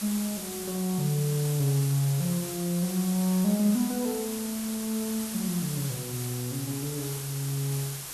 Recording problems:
hiss; slope 0 dB per octave, SNR 7 dB

